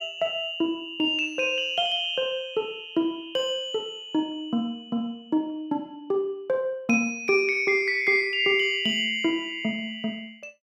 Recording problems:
none

